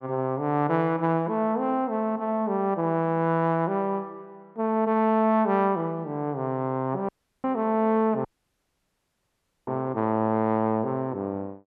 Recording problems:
audio cutting out; at 7 s and at 8.5 s for 1.5 s

